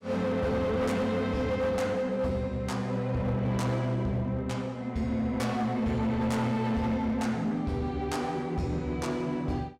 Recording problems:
distorted audio; hard clipping, signal-to-distortion ratio 11 dB

